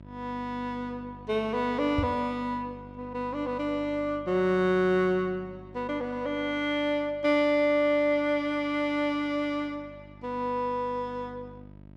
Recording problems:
hum; 50 Hz, harmonics up to 1 kHz, SNR 20 dB
knock on the microphone; at 2 s; peak +2 dB vs average level

